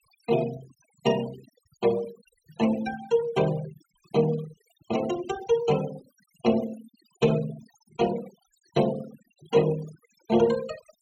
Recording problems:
noise reduction artefacts; signal-to-artefact ratio 17 dB

